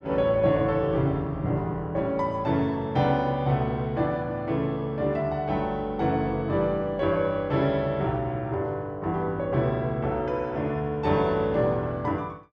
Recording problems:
none

